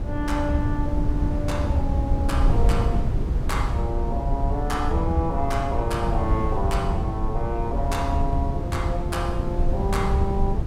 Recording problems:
wind noise; below 110 Hz, SNR -1 dB

